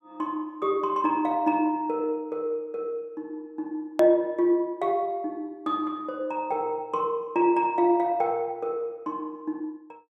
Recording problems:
edit click; at 4 s

